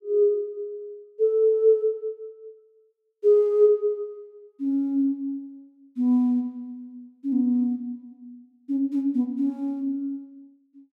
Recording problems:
none

